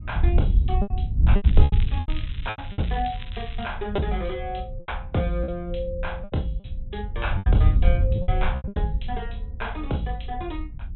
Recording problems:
treble missing; nothing above 3.9 kHz
wind on the microphone; below 82 Hz, SNR -4 dB
lost packets; 11% of the sound replaced, filled with repeated pitch periods
crackle; from 1.5 to 3.5 s; loose cable, SNR 13 dB

